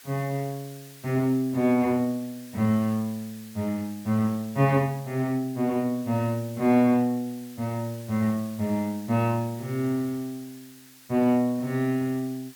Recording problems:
hiss; SNR 21 dB

